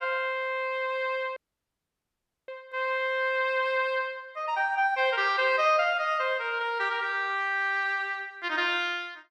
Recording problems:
audio cutting out; at 1.5 s for 1 s

